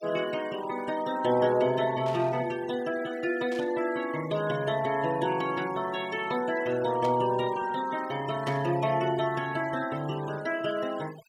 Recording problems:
noise reduction artefacts; signal-to-artefact ratio 16 dB
burst of static; 4 times, first at 2 s; peak -10 dB vs average level

